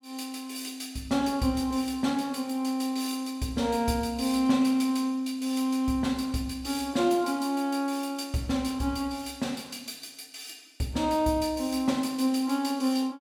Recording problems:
none

